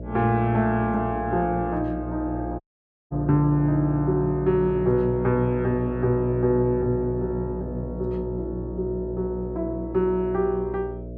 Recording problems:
electrical hum; 60 Hz, harmonics up to 660 Hz, SNR 10 dB
dropout; at 2.5 s for 0.5 s

